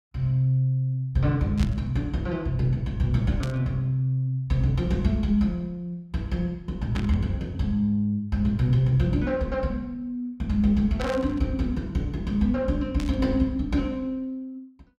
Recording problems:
burst of static; 5 times, first at 1.5 s; peak -7 dB vs average level

